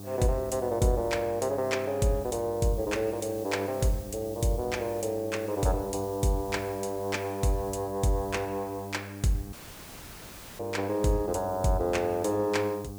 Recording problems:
hum; 50 Hz, harmonics up to 1.2 kHz, SNR 13 dB
hiss; SNR 19 dB
dropout; at 9.5 s for 1 s

